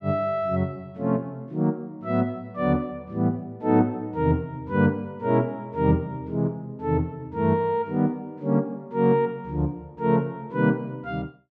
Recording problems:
none

